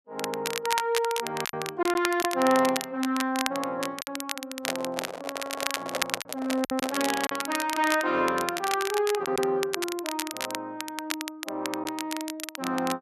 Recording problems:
crackling; vinyl, SNR 5 dB
lost packets; 3% of the sound replaced, filled with silence
microphone handling noise; from 4.5 to 7 s; peak +1 dB vs average level

